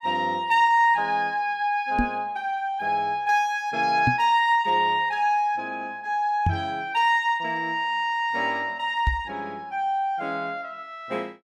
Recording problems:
knock on the microphone; 4 times, first at 2 s; peak +3 dB vs average level

